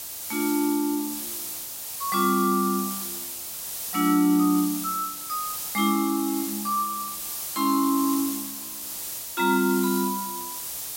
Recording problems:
background hiss; SNR 6 dB

